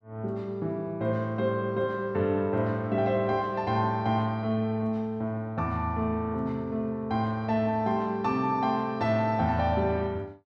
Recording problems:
none

